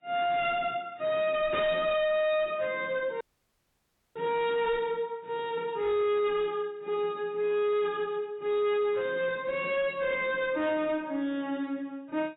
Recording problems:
codec artefacts; AAC, log-spectral distance 2 dB, nothing above 3.8 kHz
distorted audio; hard clipping, signal-to-distortion ratio 8 dB
audio cutting out; at 3 s for 1 s

